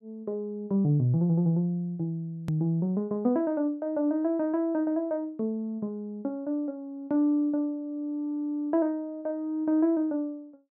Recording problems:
hard cut with a click; at 2.5 s

